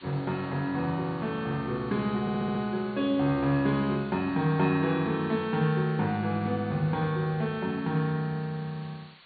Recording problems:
treble missing; nothing above 4.5 kHz
hiss; SNR 24 dB
stutter; at 2 s

